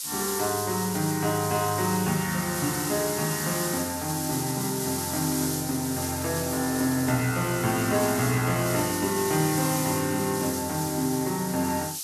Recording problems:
hiss; SNR 4 dB

